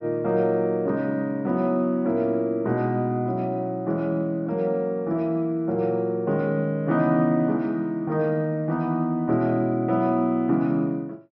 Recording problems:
treble missing; nothing above 5.9 kHz

